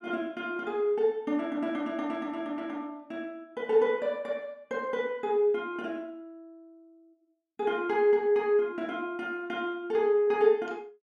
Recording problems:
none

